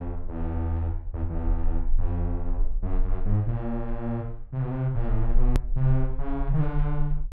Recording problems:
low-frequency rumble; below 34 Hz, strongest tone 22 Hz, SNR 3 dB
click at an edit; at 5.5 s

